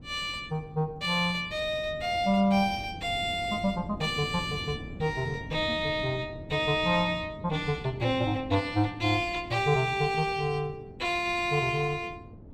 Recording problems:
wind noise; below 270 Hz, SNR 16 dB

